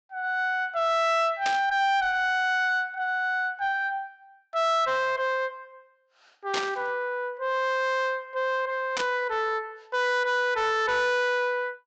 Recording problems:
treble missing; nothing above 8 kHz
distortion; soft clipping, signal-to-distortion ratio 11 dB
burst of static; at 1.5 s, at 6.5 s and at 9 s; peak 0 dB vs average level

